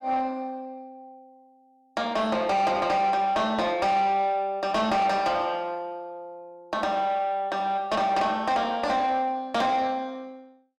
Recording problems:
distortion; soft clipping, signal-to-distortion ratio 12 dB

